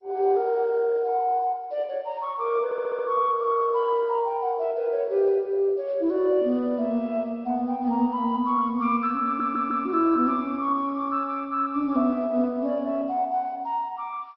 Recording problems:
codec artefacts; MP2, log-spectral distance 2 dB, nothing above 5.5 kHz
stutter; at 2.5 s and at 9.5 s

